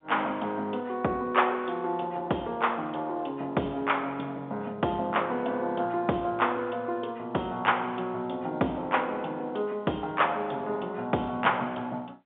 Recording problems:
phone line; 240 Hz to 3.8 kHz, G.711

